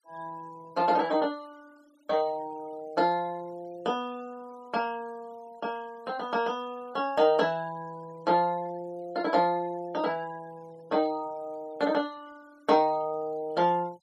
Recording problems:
noise reduction artefacts; signal-to-artefact ratio 26 dB

